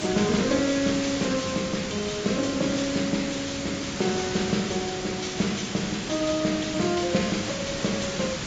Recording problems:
codec artefacts; AAC, log-spectral distance 14 dB, nothing above 7.3 kHz
hiss; SNR 5 dB

